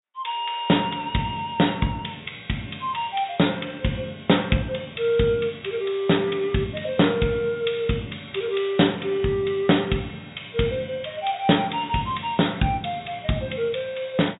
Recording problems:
treble missing; nothing above 4 kHz

